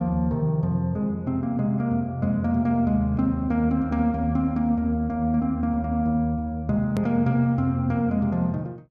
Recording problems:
click at an edit; at 7 s

